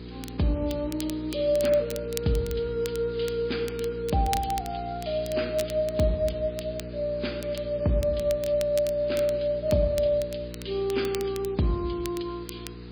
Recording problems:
lossy codec; MP3, log-spectral distance 6 dB
hum; 60 Hz, harmonics up to 480 Hz, SNR 12 dB
background hiss; SNR 24 dB
crackling; vinyl, SNR 16 dB

